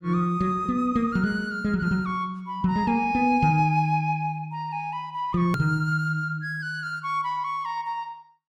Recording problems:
click at an edit; at 5.5 s

